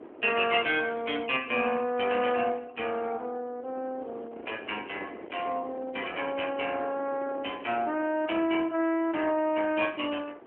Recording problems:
telephone audio; 260 Hz to 3.3 kHz, AMR-NB
wind noise; below 650 Hz, SNR 17 dB

